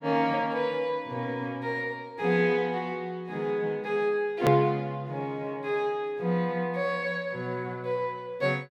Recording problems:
click at an edit; at 4.5 s

